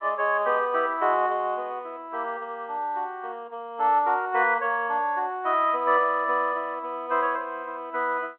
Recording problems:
telephone audio; 260 Hz to 3.2 kHz, G.711

